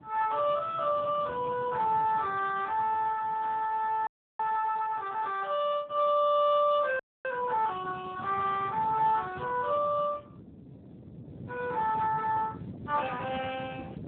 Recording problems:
telephone audio; 280 Hz to 3.6 kHz, Speex
wind on the microphone; below 310 Hz, SNR 15 dB
frozen audio; at 4 s and at 7 s

